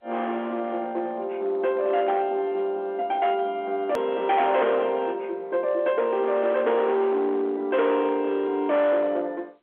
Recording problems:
phone line; 300 Hz to 3.7 kHz, G.711
distorted audio; hard clipping, signal-to-distortion ratio 12 dB
edit click; at 4 s

